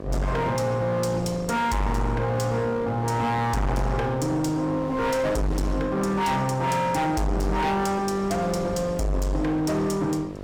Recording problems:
distortion; hard clipping, uneven, signal-to-distortion ratio 6 dB
electrical hum; 50 Hz, harmonics up to 1.8 kHz, SNR 13 dB
wind on the microphone; below 610 Hz, SNR 19 dB

